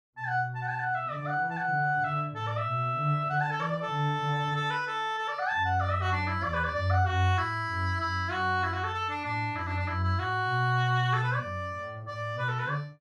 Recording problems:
none

